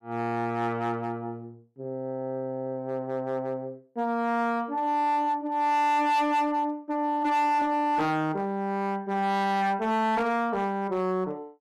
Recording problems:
distorted audio; hard clipping, uneven, signal-to-distortion ratio 12 dB

